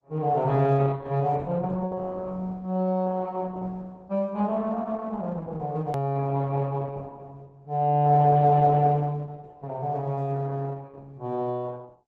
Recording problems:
codec artefacts; Opus, log-spectral distance 2 dB, nothing above 13.1 kHz
edit click; at 6 s

